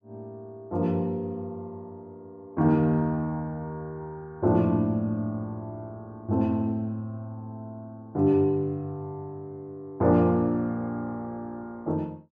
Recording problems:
none

